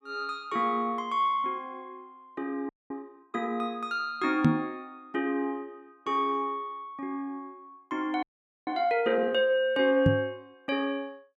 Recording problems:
frozen audio; at 2.5 s and at 8 s
knock on the microphone; at 4.5 s and at 10 s; peak +10 dB vs average level

